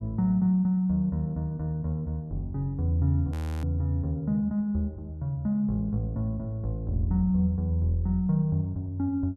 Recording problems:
audio freezing; at 3.5 s

